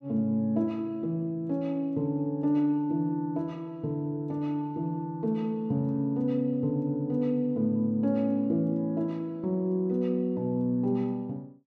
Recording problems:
none

